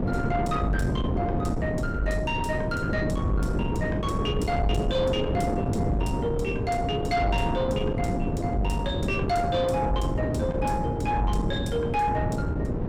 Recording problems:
distortion; soft clipping, signal-to-distortion ratio 11 dB
wind on the microphone; below 380 Hz, SNR 0 dB

